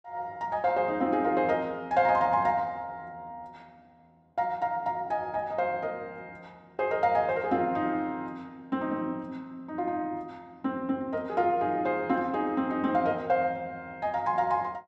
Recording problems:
none

